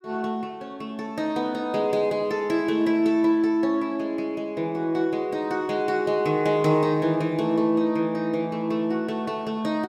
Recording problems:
none

